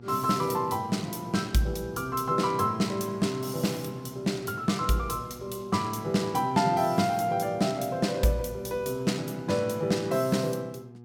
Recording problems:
hum; 60 Hz, harmonics up to 840 Hz, SNR 20 dB

